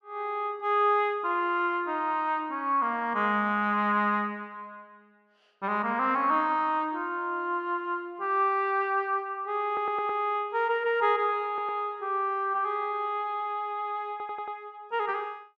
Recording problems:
stutter; at 9.5 s, at 11 s and at 14 s

